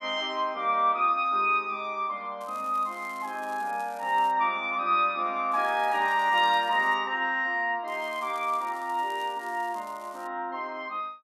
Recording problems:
crackle; from 2.5 to 4.5 s, from 5.5 to 7 s and from 8 to 10 s; loose cable, SNR 26 dB

